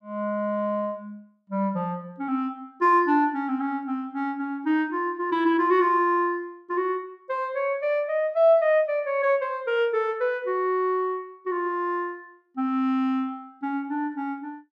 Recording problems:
none

